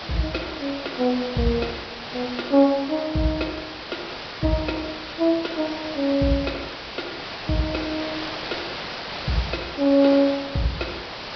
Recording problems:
treble cut off; nothing above 5.5 kHz
hiss; SNR 8 dB

